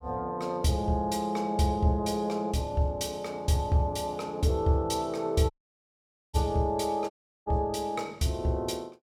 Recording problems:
audio cutting out; at 5.5 s for 1 s and at 7 s

